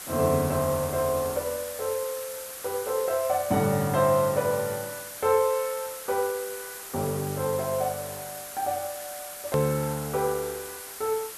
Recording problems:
background hiss; SNR 10 dB
hard cut with a click; at 9.5 s

